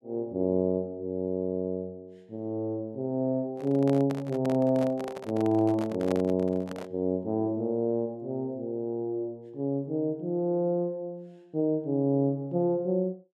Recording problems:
handling noise; from 3.5 to 7 s; peak -3 dB vs average level

